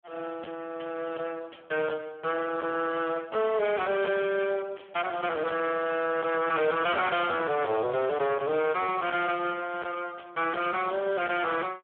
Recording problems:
telephone audio; 340 Hz to 3.5 kHz, Speex
distorted audio; hard clipping, signal-to-distortion ratio 8 dB

